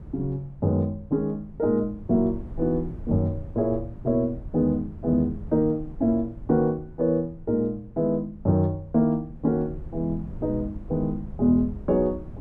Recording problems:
wind on the microphone; below 130 Hz, SNR 16 dB

